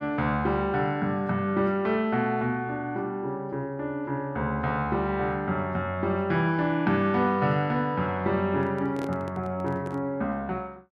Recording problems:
microphone handling noise; from 8.5 to 10 s; peak -6 dB vs average level

